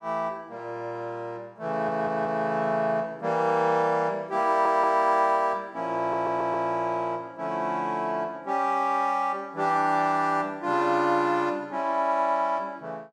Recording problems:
audio stuttering; at 1.5 s, at 4.5 s and at 6 s

